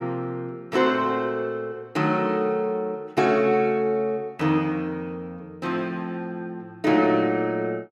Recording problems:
none

